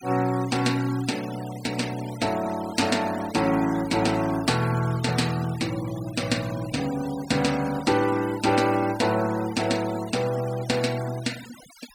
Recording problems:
denoising artefacts; signal-to-artefact ratio 15 dB

